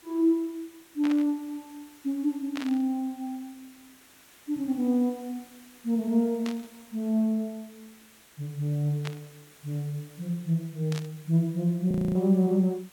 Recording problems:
background hiss; slope -1 dB per octave, SNR 25 dB
burst of static; 5 times, first at 1 s; peak -5 dB vs average level
frozen audio; at 12 s

